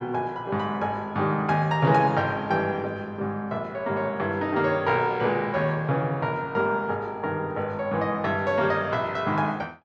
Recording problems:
none

